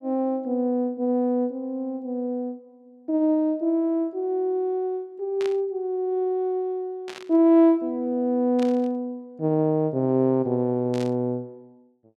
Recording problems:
static burst; 4 times, first at 5.5 s; peak -10 dB vs average level

